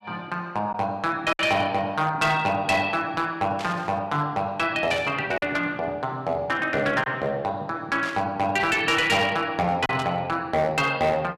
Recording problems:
distortion; hard clipping, signal-to-distortion ratio 12 dB
lost packets; 1.4% of the sound replaced, filled with silence
static burst; 4 times, first at 3.5 s; peak -6 dB vs average level

